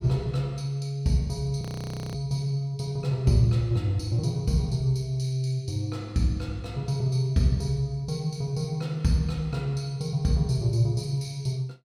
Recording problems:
frozen audio; at 1.5 s for 0.5 s

